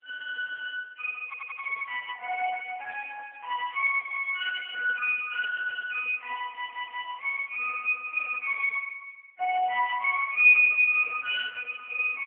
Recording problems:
phone line; 500 Hz to 2.9 kHz, AMR-NB
stutter; at 1.5 s and at 6.5 s

